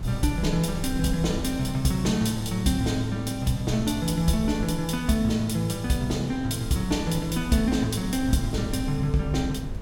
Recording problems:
wind noise; below 100 Hz, SNR 12 dB

